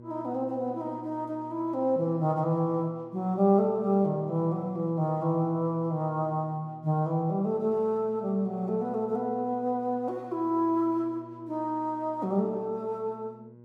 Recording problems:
electrical hum; 60 Hz, harmonics up to 960 Hz, SNR 21 dB

